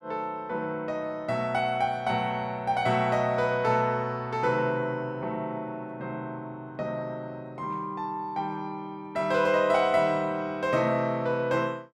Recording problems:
none

